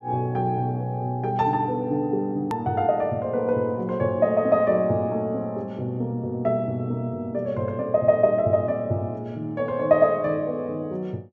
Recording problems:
hard cut with a click; at 2.5 s

